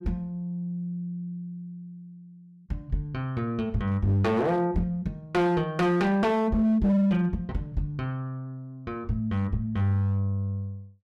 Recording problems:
distortion; hard clipping, signal-to-distortion ratio 11 dB

